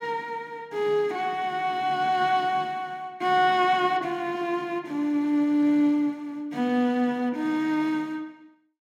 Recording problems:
none

